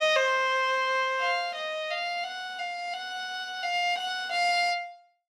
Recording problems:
none

